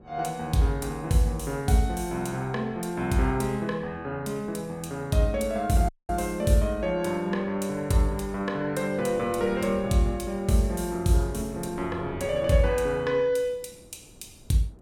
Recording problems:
wind noise; below 390 Hz, SNR 21 dB
dropout; at 6 s

